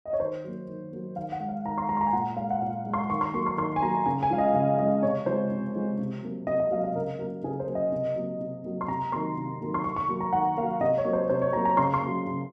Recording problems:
none

